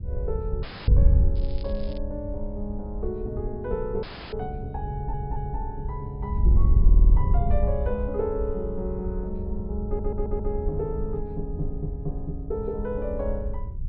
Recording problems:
treble cut off; nothing above 5.5 kHz
wind on the microphone; below 70 Hz, SNR -4 dB
dropout; at 0.5 s and at 4 s
crackling; at 1.5 s; loose cable, SNR 19 dB
stutter; at 5 s, at 7 s and at 10 s

